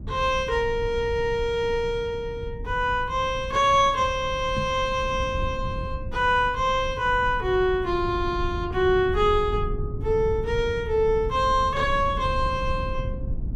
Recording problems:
rumble; below 110 Hz, SNR 10 dB
microphone thump; at 4.5 s; peak -2 dB vs average level

